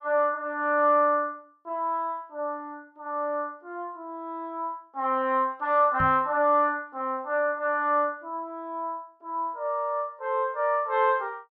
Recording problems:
knock on the microphone; at 6 s; peak -3 dB vs average level

